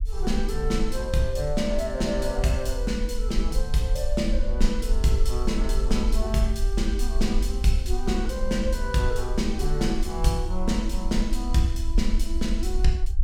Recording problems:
rumble; below 46 Hz, SNR 2 dB

